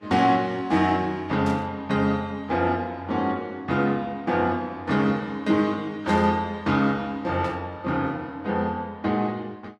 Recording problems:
codec artefacts; Vorbis, log-spectral distance 2 dB, nothing above 13.7 kHz
burst of static; at 1.5 s, at 6 s and at 7.5 s; peak -13 dB vs average level

